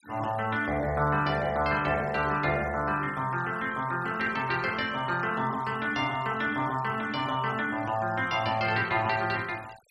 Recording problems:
noise reduction artefacts; signal-to-artefact ratio 21 dB

